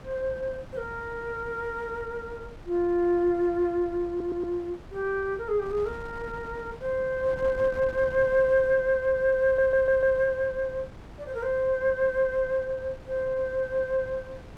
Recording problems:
wind noise; below 470 Hz, SNR 18 dB
stutter; at 4 s and at 9.5 s

